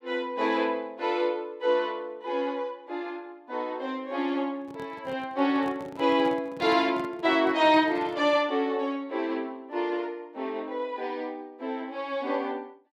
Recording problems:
microphone handling noise; from 4.5 to 8.5 s; peak -10 dB vs average level

